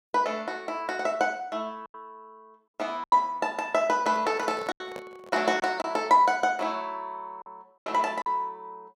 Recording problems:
packet loss; 5% of the sound replaced, filled with silence
microphone handling noise; from 4 to 5.5 s; peak -9 dB vs average level

